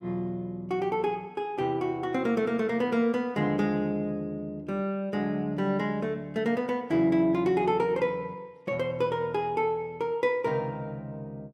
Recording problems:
none

